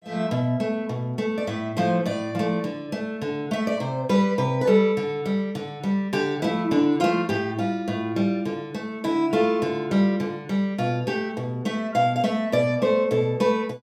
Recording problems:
none

